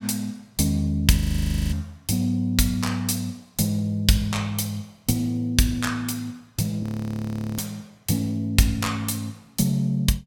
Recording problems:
frozen audio; at 1 s for 0.5 s and at 7 s for 1 s

